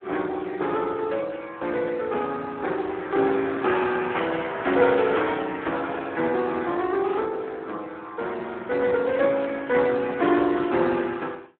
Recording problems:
phone line; 190 Hz to 3.5 kHz, Speex

